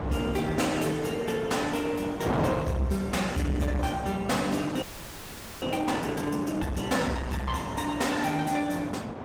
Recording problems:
codec artefacts; Opus, log-spectral distance 4 dB
distorted audio; soft clipping, signal-to-distortion ratio 11 dB
wind on the microphone; below 790 Hz, SNR 6 dB
frozen audio; at 5 s for 1 s

